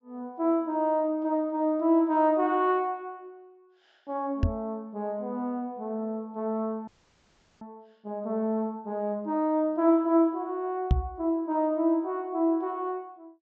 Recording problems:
low-pass filter; nothing above 8 kHz
microphone thump; at 4.5 s and at 11 s; peak +8 dB vs average level
frozen audio; at 7 s for 0.5 s

